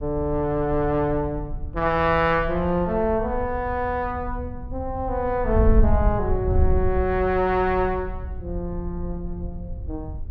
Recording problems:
wind noise; below 78 Hz, SNR 6 dB

